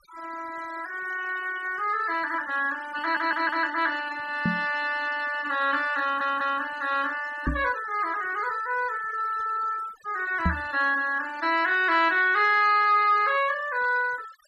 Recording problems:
denoising artefacts; signal-to-artefact ratio 19 dB
audio stuttering; at 3 s and at 6 s
knock on the microphone; at 4.5 s, at 7.5 s and at 10 s; peak +3 dB vs average level

